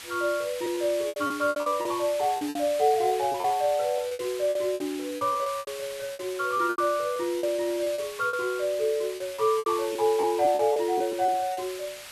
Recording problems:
background hiss; SNR 13 dB
lost packets; 14% of the sound replaced, filled with repeated pitch periods

